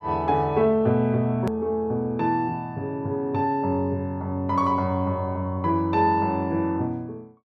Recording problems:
edit click; at 1.5 s

